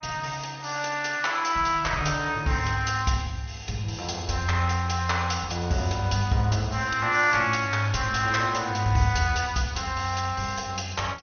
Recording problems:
lossy compression; MP2, log-spectral distance 5 dB, nothing above 6.2 kHz

